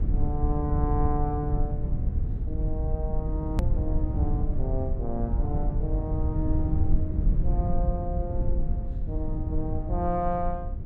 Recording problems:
rumble; below 86 Hz, SNR -4 dB
click at an edit; at 3.5 s

